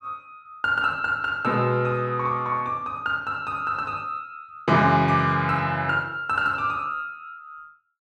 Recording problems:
none

